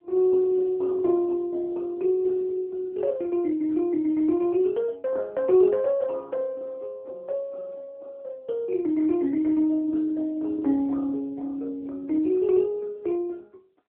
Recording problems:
phone line; 240 Hz to 3.4 kHz, AMR-NB

